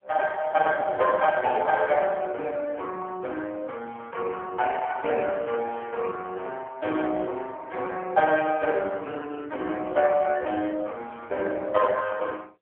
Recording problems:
phone line; 280 Hz to 3.1 kHz, AMR-NB

